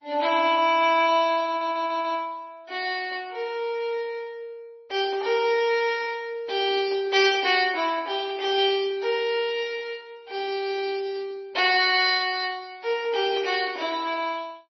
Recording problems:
lossy compression; Opus, then MP3, log-spectral distance 3 dB, nothing above 4.8 kHz
audio stuttering; at 1.5 s

